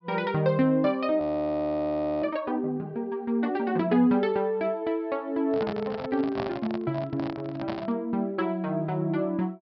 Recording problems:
treble cut off; nothing above 5.5 kHz
frozen audio; at 1 s for 1 s
microphone handling noise; from 5.5 to 8 s; peak -1 dB vs average level

